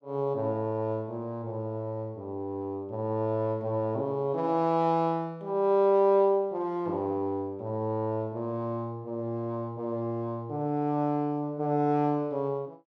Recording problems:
none

